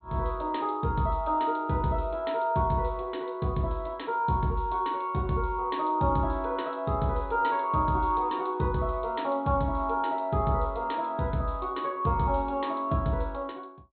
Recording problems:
treble missing; nothing above 4.2 kHz

